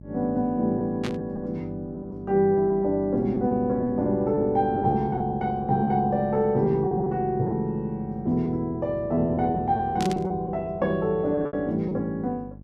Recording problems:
hum; 50 Hz, harmonics up to 600 Hz, SNR 18 dB
lost packets; 7% of the sound replaced, filled with repeated pitch periods
static burst; at 1 s and at 10 s; peak -5 dB vs average level

